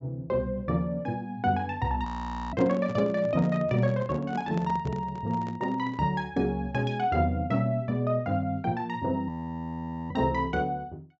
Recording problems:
treble cut off; nothing above 8 kHz
audio freezing; at 2 s and at 9.5 s for 1 s
handling noise; from 2.5 to 6 s; peak -4 dB vs average level

